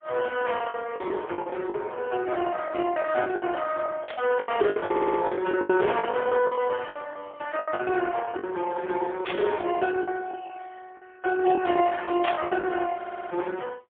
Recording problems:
telephone audio; 320 Hz to 3.4 kHz, AMR-NB, then MP3
lost packets; 13% of the sound replaced, filled with the last packet
burst of static; at 4 s, at 9.5 s and at 12 s; peak 0 dB vs average level
stutter; at 5 s and at 13 s

